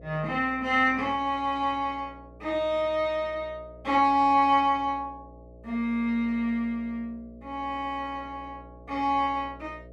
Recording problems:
hum; 60 Hz, harmonics up to 660 Hz, SNR 22 dB

